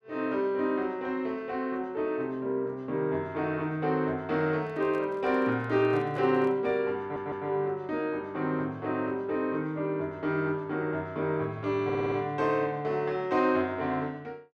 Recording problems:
microphone handling noise; from 4.5 to 6.5 s; peak -12 dB vs average level
audio stuttering; at 7 s and at 12 s

